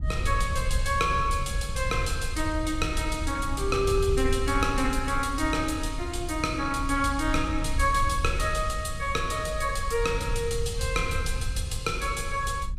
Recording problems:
low-frequency rumble; below 80 Hz, SNR 5 dB

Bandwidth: 15.5 kHz